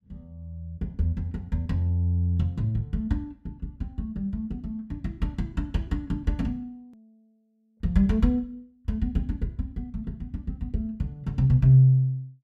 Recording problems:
click at an edit; at 7 s

